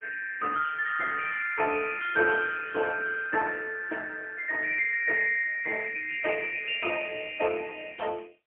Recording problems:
phone line; 300 Hz to 3.1 kHz, AMR-NB, then MP3

